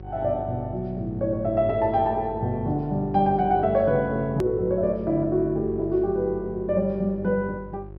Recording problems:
treble missing; nothing above 6 kHz
hum; 50 Hz, harmonics up to 750 Hz, SNR 15 dB
edit click; at 4.5 s

